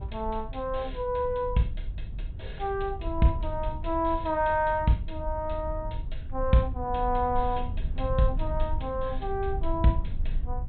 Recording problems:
low-pass filter; nothing above 4 kHz
low-frequency rumble; below 68 Hz, SNR 7 dB

